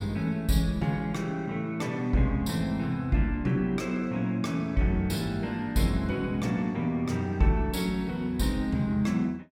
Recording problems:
none

